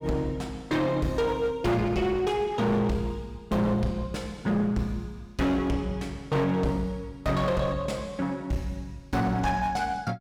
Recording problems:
distorted audio; hard clipping, uneven, signal-to-distortion ratio 7 dB

